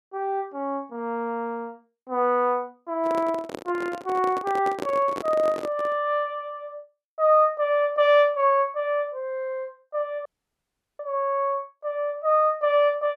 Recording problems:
microphone handling noise; from 3 to 6 s; peak -3 dB vs average level
audio cutting out; at 10 s for 0.5 s

